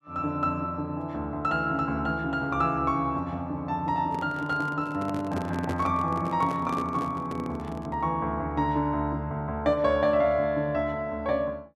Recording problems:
handling noise; from 4 to 8 s; peak -3 dB vs average level

